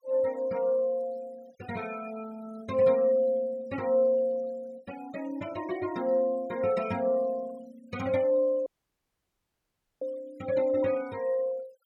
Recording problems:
denoising artefacts; signal-to-artefact ratio 22 dB
dropout; at 8.5 s for 1.5 s

